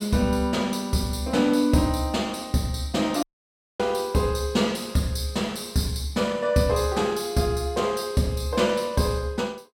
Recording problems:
dropout; at 3 s for 0.5 s

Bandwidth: 16.5 kHz